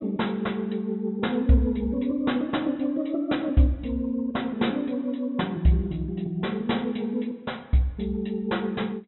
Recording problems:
treble cut off; nothing above 4 kHz

